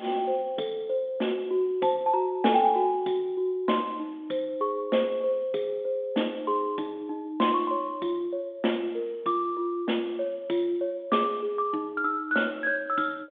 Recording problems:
telephone audio; 240 Hz to 3.6 kHz, G.726

